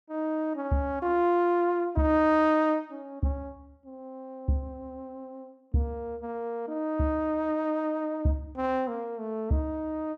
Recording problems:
none

